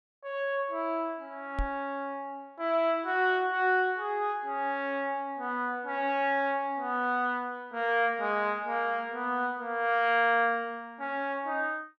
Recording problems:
microphone thump; at 1.5 s; peak -1 dB vs average level

